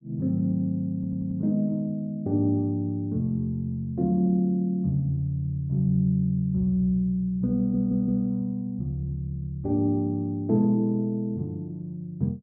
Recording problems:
stutter; at 1 s and at 7.5 s

